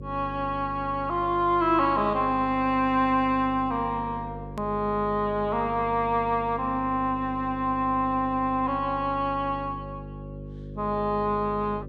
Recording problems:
hum; 50 Hz, harmonics up to 550 Hz, SNR 14 dB
hard cut with a click; at 4.5 s

